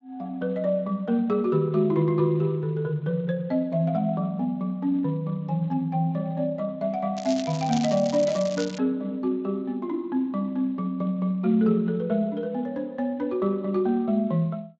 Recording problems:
lossy compression; Speex, log-spectral distance 2 dB
crackling; from 7 to 9 s; loose cable, SNR 13 dB

